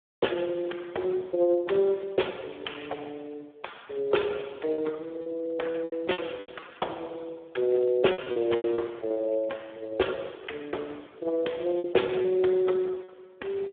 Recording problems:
phone line; 300 Hz to 3.5 kHz, Speex
lost packets; 6% of the sound replaced, filled with repeated pitch periods

